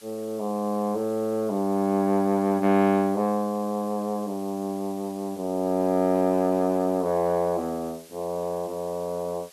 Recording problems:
hiss; slope +1 dB per octave, SNR 23 dB

